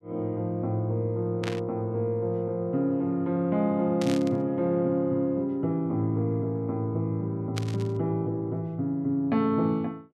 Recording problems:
static burst; at 1.5 s, at 4 s and at 7.5 s; peak -3 dB vs average level

